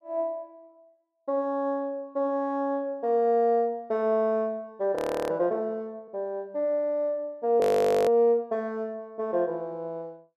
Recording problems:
frozen audio; at 5 s and at 7.5 s

